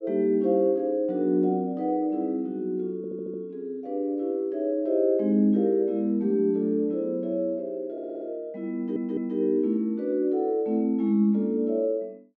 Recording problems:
stutter; at 3 s, at 8 s and at 9 s

